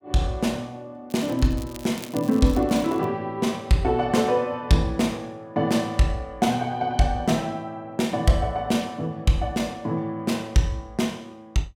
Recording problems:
crackle; from 1 to 3 s; loose cable, SNR 19 dB

